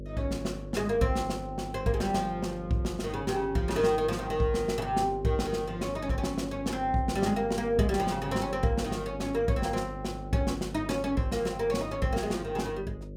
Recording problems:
electrical hum; 50 Hz, harmonics up to 600 Hz, SNR 11 dB

